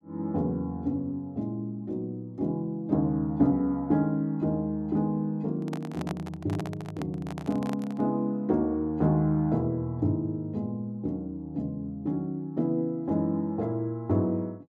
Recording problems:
handling noise; from 5.5 to 8 s; peak -5 dB vs average level

